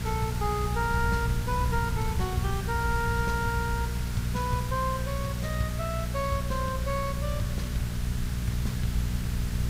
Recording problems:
electrical hum; 60 Hz, harmonics up to 480 Hz, SNR 1 dB
background hiss; SNR 8 dB
wind on the microphone; below 120 Hz, SNR 4 dB

